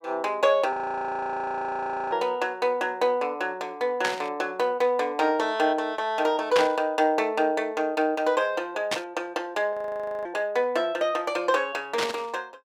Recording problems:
audio freezing; at 0.5 s for 1.5 s and at 9.5 s for 0.5 s
burst of static; 4 times, first at 4 s; peak +4 dB vs average level

